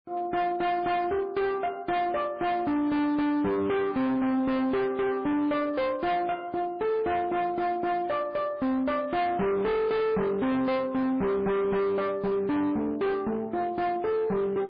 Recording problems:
codec artefacts; MP3, log-spectral distance 2 dB, nothing above 4.2 kHz
distortion; hard clipping, signal-to-distortion ratio 6 dB

